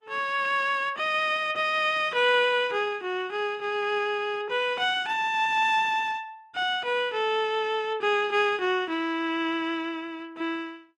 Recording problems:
codec artefacts; Opus, log-spectral distance 2 dB

